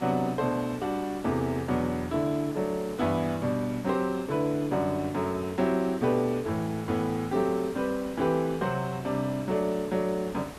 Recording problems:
background hiss; slope -5 dB per octave, SNR 15 dB

